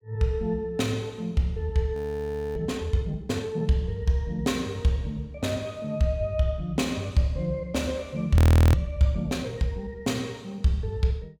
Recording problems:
frozen audio; at 2 s for 0.5 s and at 8.5 s

